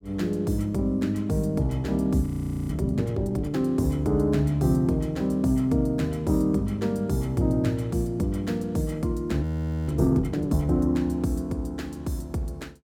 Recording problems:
frozen audio; at 2.5 s and at 9.5 s

